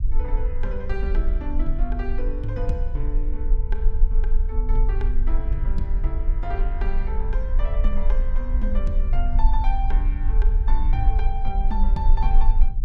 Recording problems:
low-frequency rumble; below 42 Hz, strongest tone 26 Hz, SNR -8 dB

